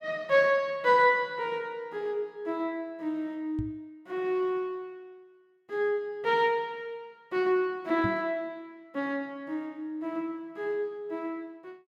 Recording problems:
knock on the microphone; at 3.5 s and at 8 s; peak -1 dB vs average level

